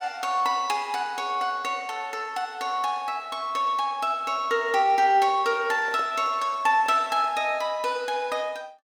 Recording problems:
handling noise; from 4.5 to 7.5 s; peak -10 dB vs average level

